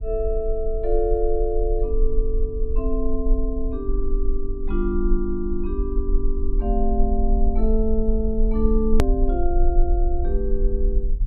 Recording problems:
treble missing; nothing above 4.8 kHz
low-frequency rumble; below 42 Hz, strongest tone 22 Hz, SNR 0 dB
click at an edit; at 9 s

